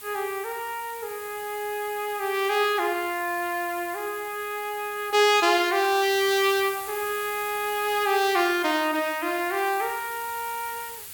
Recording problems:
hiss; slope +2 dB per octave, SNR 13 dB

